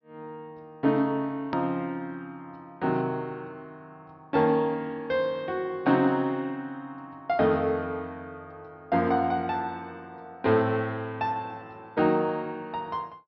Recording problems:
treble missing; nothing above 5.5 kHz
edit click; at 1.5 s

